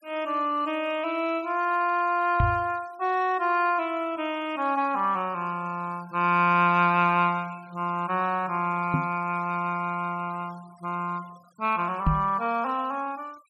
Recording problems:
noise reduction artefacts; signal-to-artefact ratio 27 dB
microphone thump; at 2.5 s, at 9 s and at 12 s; peak +5 dB vs average level

